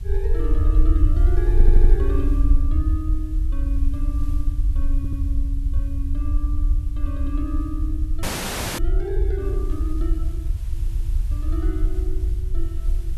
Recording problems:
background hiss; slope -2 dB per octave, SNR 20 dB
rumble; below 60 Hz, SNR -10 dB
stutter; at 1.5 s, at 5 s and at 11 s
audio freezing; at 8 s for 0.5 s

